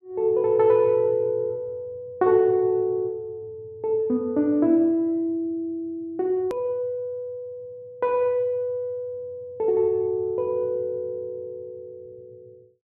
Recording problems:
edit click; at 6.5 s

